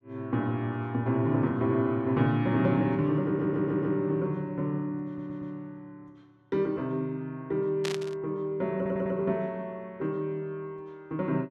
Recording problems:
stutter; at 3.5 s, at 5 s and at 9 s
static burst; at 8 s; peak -2 dB vs average level

